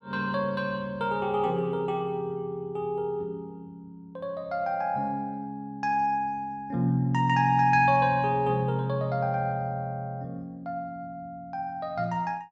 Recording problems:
none

